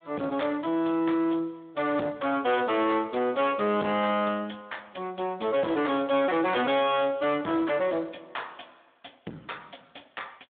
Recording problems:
phone line; 170 Hz to 3.7 kHz, Speex
distorted audio; soft clipping, signal-to-distortion ratio 10 dB

